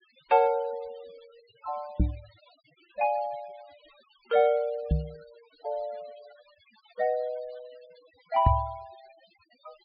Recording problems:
treble cut off; nothing above 4.8 kHz
noise reduction artefacts; signal-to-artefact ratio 26 dB
microphone thump; at 2 s, at 5 s and at 8.5 s; peak +9 dB vs average level

